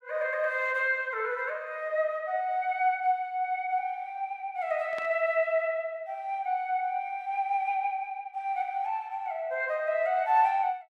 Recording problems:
static burst; at 5 s; peak -11 dB vs average level

